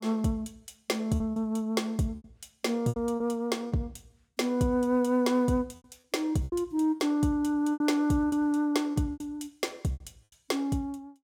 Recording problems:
lost packets; 9% of the sound replaced, filled with repeated pitch periods

